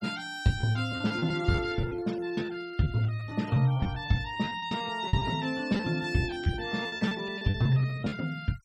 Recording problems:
noise reduction artefacts; signal-to-artefact ratio 22 dB
lost packets; 17% of the sound replaced, filled with repeated pitch periods

